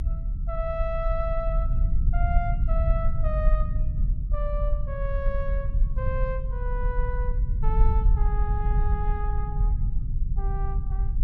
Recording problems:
low-frequency rumble; below 56 Hz, SNR -7 dB

